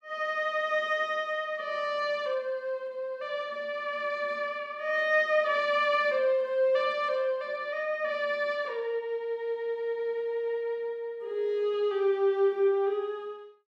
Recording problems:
none

